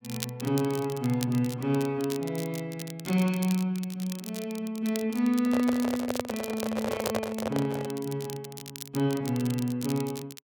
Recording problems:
crackle; vinyl, SNR 13 dB
microphone handling noise; from 5.5 to 8 s; peak +4 dB vs average level

